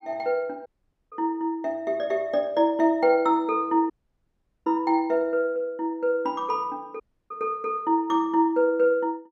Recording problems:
dropout; at 0.5 s, at 4 s for 1 s and at 7 s

